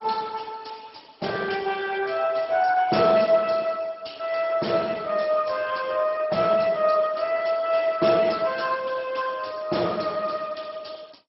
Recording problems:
codec artefacts; Speex, then MP2, log-spectral distance 7 dB, nothing above 5.5 kHz

